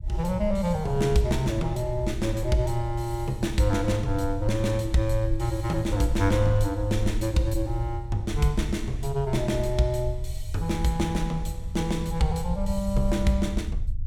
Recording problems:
rumble; below 70 Hz, SNR 7 dB

